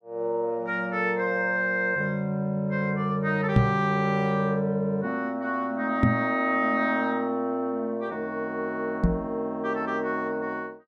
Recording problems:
knock on the microphone; at 3.5 s, at 6 s and at 9 s; peak +9 dB vs average level

